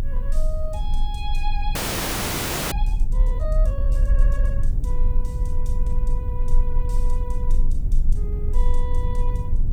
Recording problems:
hiss; SNR 28 dB
low-frequency rumble; below 42 Hz, strongest tone 22 Hz, SNR -12 dB
frozen audio; at 2 s for 1 s

